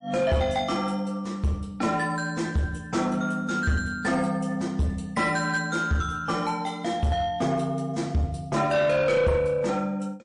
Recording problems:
codec artefacts; MP3, log-spectral distance 2 dB, nothing above 9.8 kHz
distorted audio; soft clipping, signal-to-distortion ratio 10 dB

